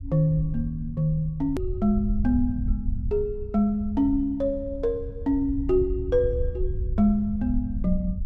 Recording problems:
low-frequency rumble; below 84 Hz, SNR 7 dB
edit click; at 1.5 s

